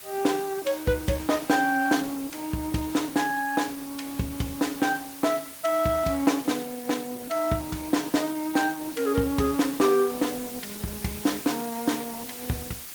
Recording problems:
codec artefacts; Opus, log-spectral distance 7 dB, nothing above 19 kHz
background hiss; slope +1 dB per octave, SNR 12 dB

